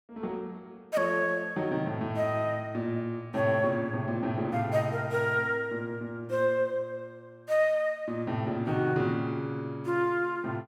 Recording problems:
none

